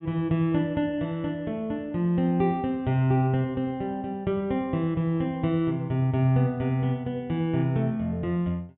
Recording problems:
treble missing; nothing above 3.6 kHz

